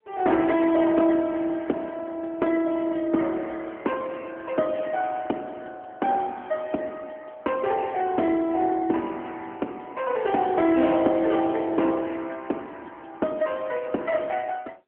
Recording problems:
phone line; 220 Hz to 3.4 kHz, AMR-NB

